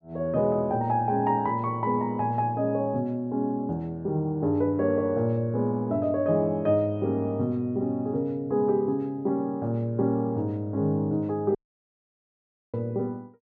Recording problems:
dropout; at 12 s for 1 s

